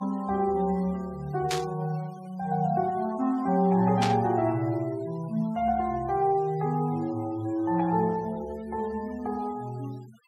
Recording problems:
noise reduction artefacts; signal-to-artefact ratio 24 dB
burst of static; at 1.5 s and at 4 s; peak +1 dB vs average level

